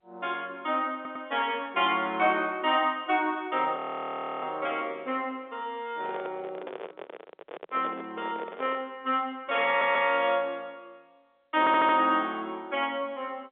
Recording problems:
telephone audio; 220 Hz to 3.6 kHz, G.711
audio stuttering; at 1 s, at 9.5 s and at 12 s
audio freezing; at 4 s for 0.5 s
microphone handling noise; from 6 to 9 s; peak -7 dB vs average level

